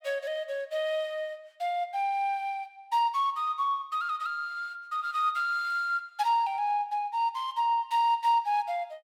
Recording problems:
none

